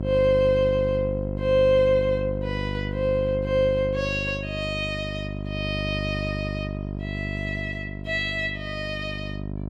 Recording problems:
hum; 50 Hz, harmonics up to 750 Hz, SNR 6 dB

